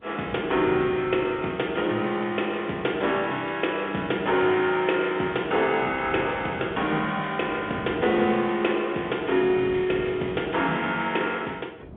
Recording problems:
telephone audio; 190 Hz to 3.6 kHz, G.711
wind on the microphone; below 400 Hz, SNR 17 dB

